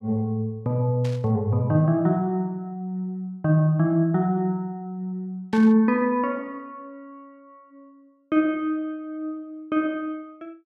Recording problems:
static burst; at 1 s and at 5.5 s; peak -12 dB vs average level

